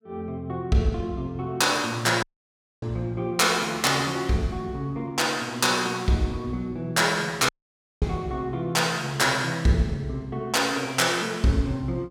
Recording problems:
audio cutting out; at 2 s for 0.5 s and at 7.5 s for 0.5 s

